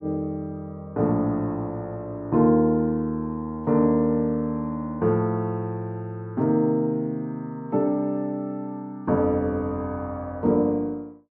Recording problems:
none

